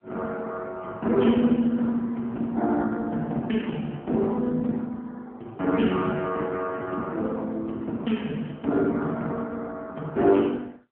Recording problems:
telephone audio; 170 Hz to 3.2 kHz, AMR-NB

